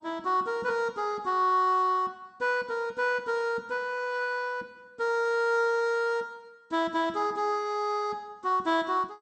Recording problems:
lossy compression; MP2, log-spectral distance 2 dB, nothing above 7.6 kHz

